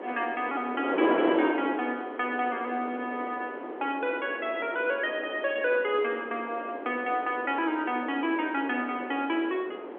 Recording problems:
phone line; 280 Hz to 3.4 kHz, G.711
wind noise; below 710 Hz, SNR 6 dB

